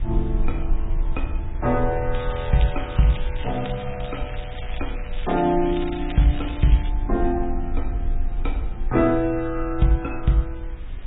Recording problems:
low-pass filter; nothing above 3.8 kHz
lossy compression; MP3, log-spectral distance 4 dB
background hiss; SNR 24 dB
low-frequency rumble; below 50 Hz, strongest tone 20 Hz, SNR 7 dB
crackle; from 2 to 7 s; loose cable, SNR 16 dB

